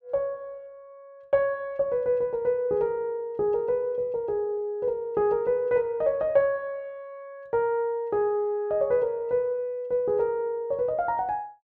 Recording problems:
none

